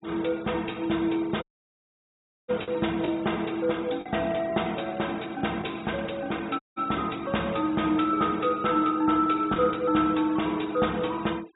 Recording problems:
low-pass filter; nothing above 4 kHz
noise reduction artefacts; signal-to-artefact ratio 22 dB
lost packets; 1.4% of the sound replaced, filled with the last packet
audio cutting out; at 1.5 s for 1 s and at 6.5 s

